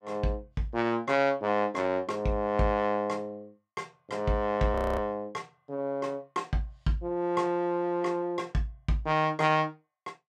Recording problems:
audio freezing; at 4.5 s

